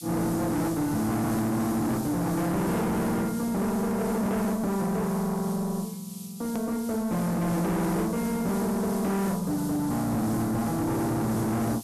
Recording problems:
distortion; soft clipping, signal-to-distortion ratio 6 dB
background hiss; SNR 14 dB
hard cut with a click; at 6.5 s

